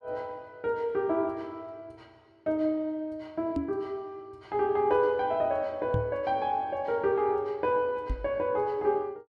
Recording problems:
microphone bump; at 3.5 s, at 6 s and at 8 s; peak +2 dB vs average level

